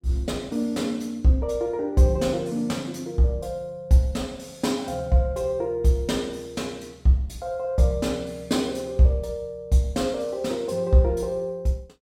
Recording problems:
none

